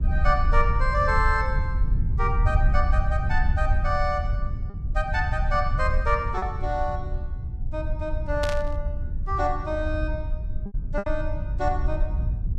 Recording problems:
low-frequency rumble; below 76 Hz, SNR 0 dB
lost packets; 1.1% of the sound replaced, filled with repeated pitch periods
static burst; at 8.5 s; peak -1 dB vs average level

